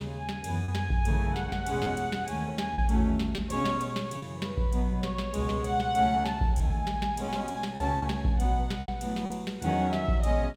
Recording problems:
packet loss; 5% of the sound replaced, filled with repeated pitch periods

